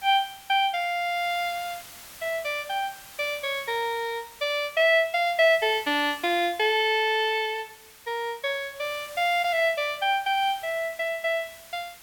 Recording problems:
background hiss; slope 0 dB per octave, SNR 19 dB

